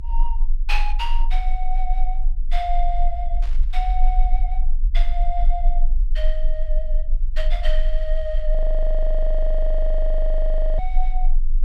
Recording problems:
low-frequency rumble; below 28 Hz, strongest tone 22 Hz, SNR -6 dB
static burst; at 3.5 s; peak -10 dB vs average level
audio freezing; at 8.5 s for 2 s

